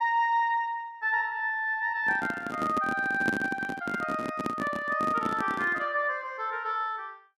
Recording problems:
handling noise; from 2 to 6 s; peak +3 dB vs average level

